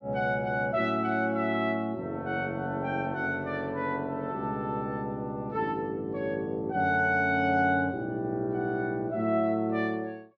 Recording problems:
none

